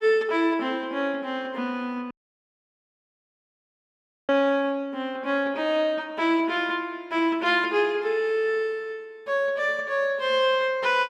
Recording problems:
dropout; at 2 s for 2 s

